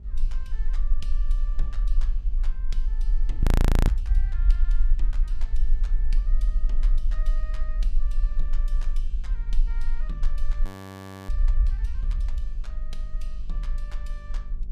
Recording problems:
electrical hum; 50 Hz, harmonics up to 400 Hz, SNR 1 dB
low-frequency rumble; below 38 Hz, strongest tone 26 Hz, SNR -20 dB
wind noise; below 200 Hz, SNR 18 dB
frozen audio; at 3.5 s and at 11 s for 0.5 s

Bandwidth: 15 kHz